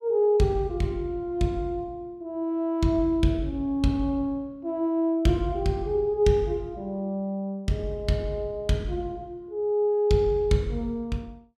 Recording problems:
none

